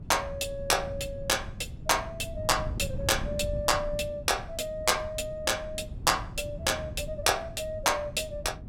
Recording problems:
wind noise; below 140 Hz, SNR 11 dB

